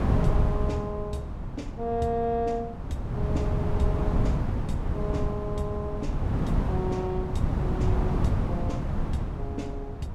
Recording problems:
wind noise; below 180 Hz, SNR -4 dB

